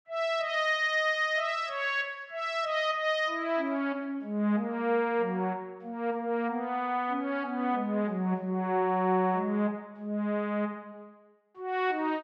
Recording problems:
none

